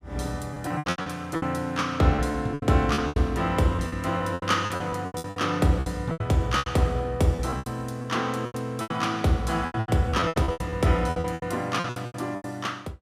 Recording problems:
packet loss; 18% of the sound replaced, filled with repeated pitch periods

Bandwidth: 15 kHz